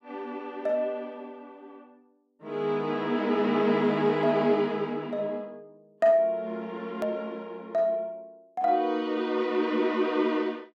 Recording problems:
hard cut with a click; at 7 s

